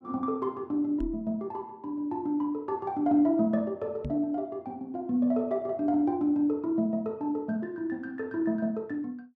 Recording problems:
microphone thump; at 1 s and at 4 s; peak -3 dB vs average level

